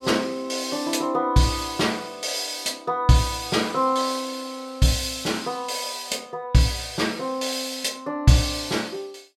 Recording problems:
none

